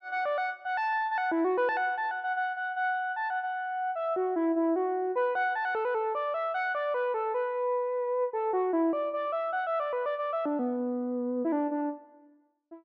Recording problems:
none

